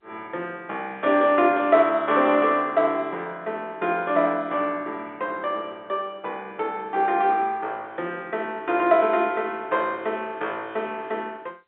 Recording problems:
telephone audio; 240 Hz to 3.7 kHz, G.711

